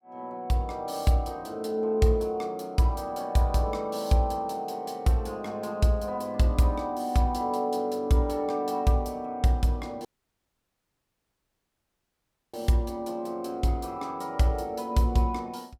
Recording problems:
dropout; at 10 s for 2.5 s

